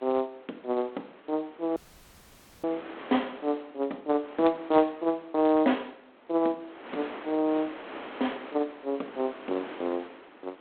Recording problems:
phone line; 220 Hz to 3.6 kHz, G.726
wind noise; below 1.9 kHz, SNR 15 dB
audio cutting out; at 2 s for 1 s

